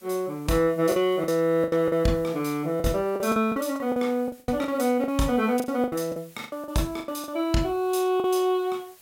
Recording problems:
hiss; slope 0 dB per octave, SNR 26 dB
lost packets; 13% of the sound replaced, filled with the last packet

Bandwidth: 16.5 kHz